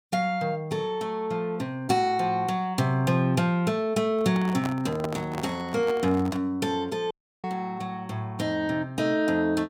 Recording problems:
handling noise; from 4 to 6.5 s; peak -3 dB vs average level
audio cutting out; at 7 s

